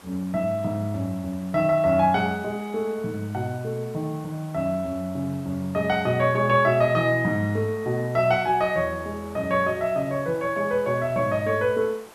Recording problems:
background hiss; SNR 23 dB

